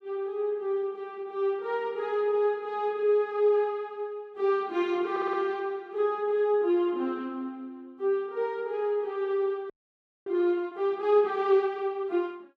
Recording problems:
stutter; at 5 s
audio freezing; at 9.5 s for 0.5 s

